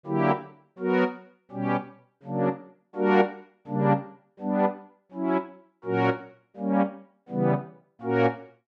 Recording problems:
none

